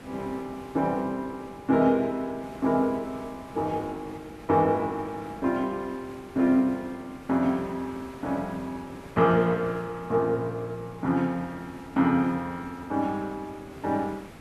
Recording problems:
background hiss; slope -6 dB per octave, SNR 19 dB

